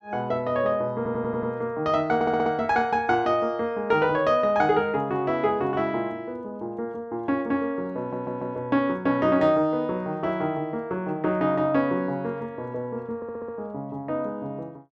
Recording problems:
audio stuttering; 4 times, first at 1 s

